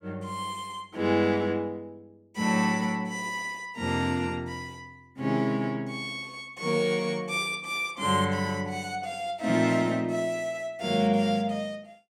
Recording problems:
none

